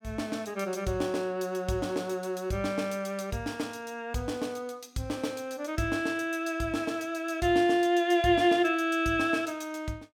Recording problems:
none

